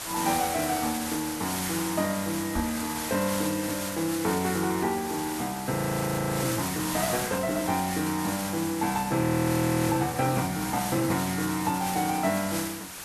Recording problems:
hiss; slope -1 dB per octave, SNR 5 dB
knock on the microphone; at 2.5 s; peak -3 dB vs average level
frozen audio; at 5.5 s for 0.5 s and at 9 s for 0.5 s

